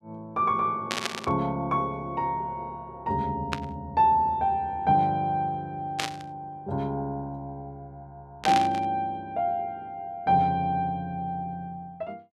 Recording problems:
burst of static; 4 times, first at 1 s; peak +3 dB vs average level

